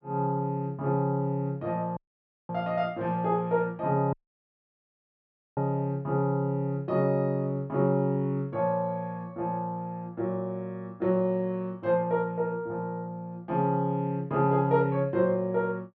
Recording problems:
audio cutting out; at 2 s for 0.5 s and at 4 s for 1.5 s

